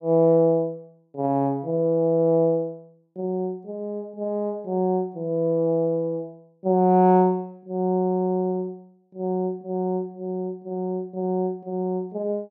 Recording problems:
none

